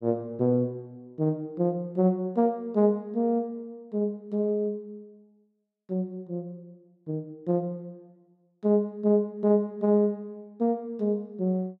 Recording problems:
none

